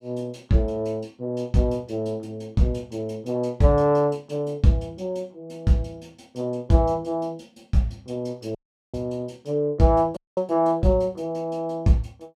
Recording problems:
audio cutting out; at 8.5 s and at 10 s

